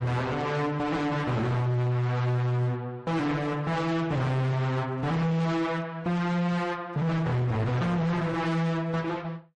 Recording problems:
lossy compression; MP3, then AAC, log-spectral distance 2 dB
distortion; hard clipping, uneven, signal-to-distortion ratio 7 dB

